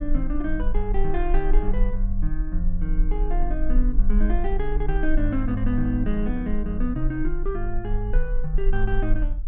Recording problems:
rumble; below 38 Hz, strongest tone 20 Hz, SNR -1 dB

